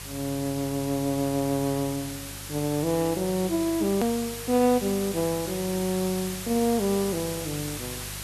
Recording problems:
hum; 50 Hz, harmonics up to 950 Hz, SNR 17 dB
background hiss; slope +1 dB per octave, SNR 9 dB
edit click; at 4 s

